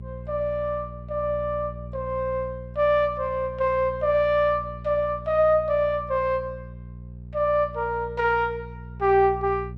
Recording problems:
electrical hum; 60 Hz, harmonics up to 420 Hz, SNR 15 dB

